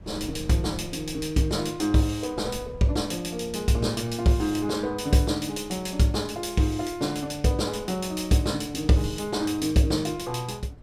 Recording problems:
wind noise; below 150 Hz, SNR 19 dB

